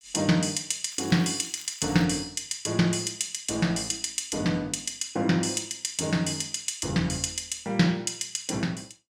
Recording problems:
crackle; from 1 to 2 s; loose cable, SNR 22 dB

